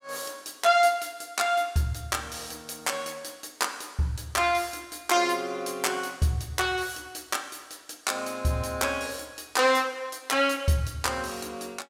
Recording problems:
none

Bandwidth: 16 kHz